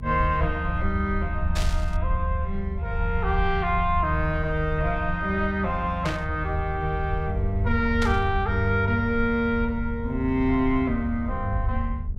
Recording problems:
hum; 50 Hz, harmonics up to 450 Hz, SNR 13 dB
low-frequency rumble; below 76 Hz, SNR 5 dB
burst of static; at 1.5 s, at 6 s and at 8 s; peak -2 dB vs average level

